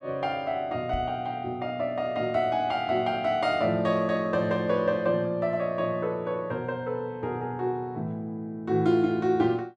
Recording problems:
knock on the microphone; at 1 s; peak -3 dB vs average level

